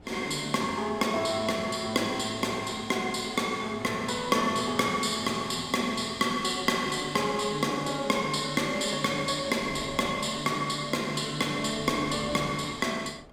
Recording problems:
wind noise; below 700 Hz, SNR 22 dB

